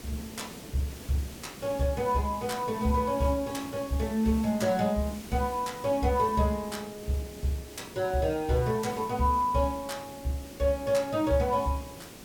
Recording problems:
hiss; SNR 15 dB

